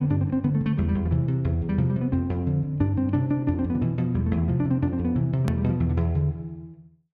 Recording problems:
edit click; at 5.5 s

